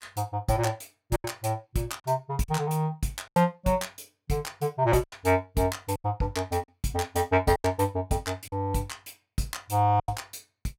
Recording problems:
packet loss; 6% of the sound replaced, filled with silence

